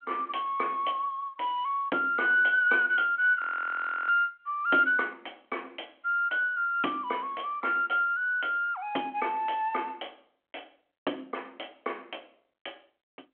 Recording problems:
telephone audio; 240 Hz to 3.3 kHz, G.726
frozen audio; at 3.5 s for 0.5 s

